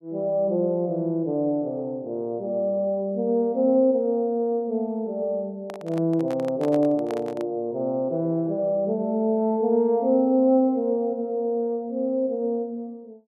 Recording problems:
handling noise; from 5.5 to 7.5 s; peak -7 dB vs average level

